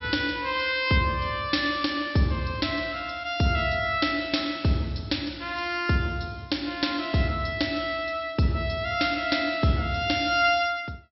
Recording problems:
treble missing; nothing above 5.6 kHz

